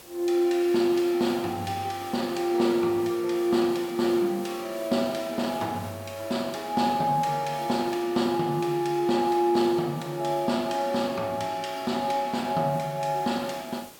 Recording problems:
hiss; slope -3 dB per octave, SNR 20 dB

